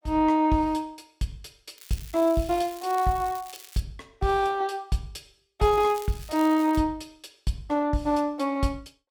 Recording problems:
crackle; from 2 to 4 s and from 5.5 to 7 s; loose cable, SNR 19 dB

